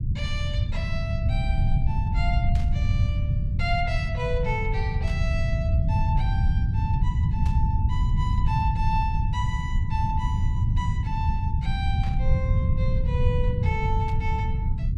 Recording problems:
low-frequency rumble; below 110 Hz, SNR -7 dB
static burst; 5 times, first at 2.5 s; peak -7 dB vs average level

